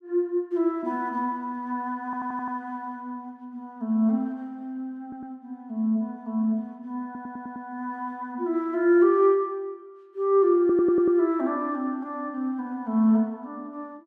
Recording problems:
stutter; 4 times, first at 2 s

